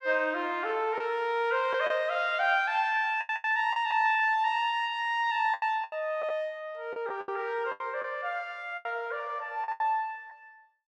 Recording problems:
packet loss; 8% of the sound replaced, filled with the last packet

